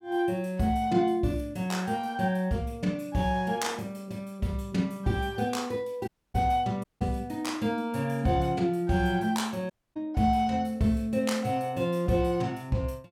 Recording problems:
dropout; at 6 s, at 7 s and at 9.5 s

